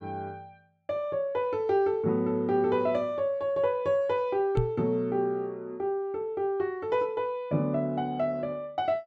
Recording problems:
microphone thump; at 4.5 s; peak +4 dB vs average level

